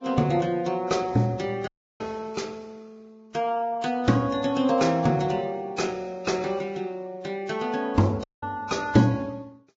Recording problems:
codec artefacts; Vorbis, log-spectral distance 2 dB, nothing above 7.3 kHz
dropout; at 1.5 s and at 8 s

